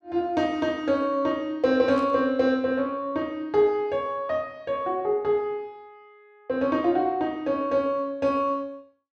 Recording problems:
static burst; at 2 s; peak -15 dB vs average level

